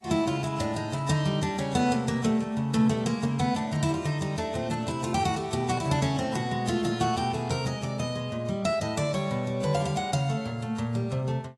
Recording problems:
lossy compression; AAC, log-spectral distance 2 dB, nothing above 11.3 kHz

